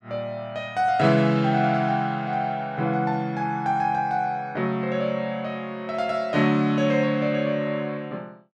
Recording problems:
none

